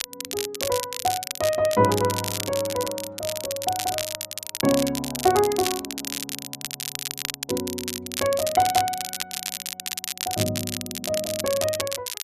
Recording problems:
crackle; vinyl, SNR 4 dB

